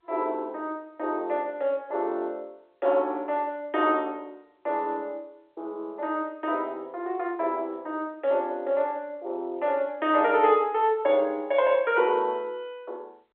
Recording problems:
phone line; 320 Hz to 3.5 kHz, G.711

